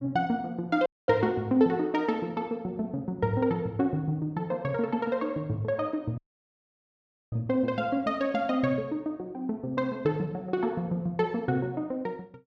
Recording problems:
dropout; at 1 s and at 6 s for 1 s

